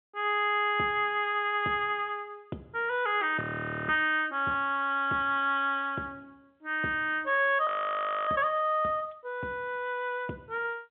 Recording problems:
phone line; 170 Hz to 3.7 kHz, G.711
frozen audio; at 3.5 s and at 7.5 s for 0.5 s

